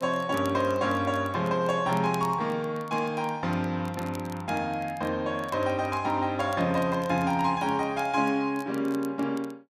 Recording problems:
crackling; vinyl, SNR 24 dB

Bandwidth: 14.5 kHz